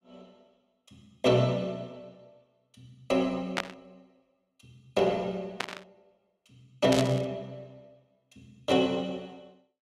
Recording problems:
static burst; at 3.5 s, at 5.5 s and at 7 s; peak +3 dB vs average level

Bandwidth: 13.5 kHz